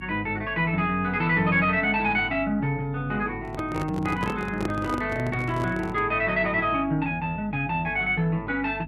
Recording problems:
mains hum; 50 Hz, harmonics up to 300 Hz, SNR 16 dB
handling noise; from 3.5 to 6 s; peak -1 dB vs average level

